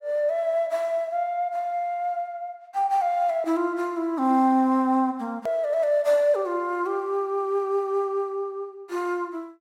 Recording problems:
hard cut with a click; at 5.5 s

